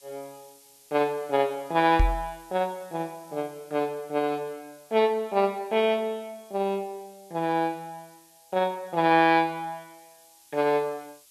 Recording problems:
hiss; SNR 27 dB
microphone bump; at 2 s; peak +6 dB vs average level

